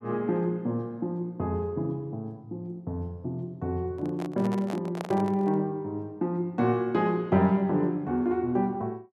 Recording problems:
microphone handling noise; from 4 to 5.5 s; peak -3 dB vs average level

